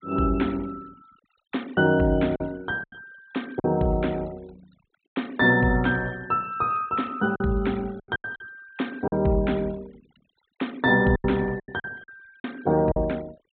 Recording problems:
treble cut off; nothing above 4 kHz
denoising artefacts; signal-to-artefact ratio 25 dB
lost packets; 7% of the sound replaced, filled with silence

